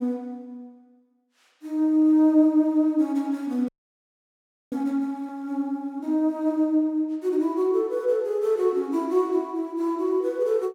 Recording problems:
frozen audio; at 3.5 s for 1 s

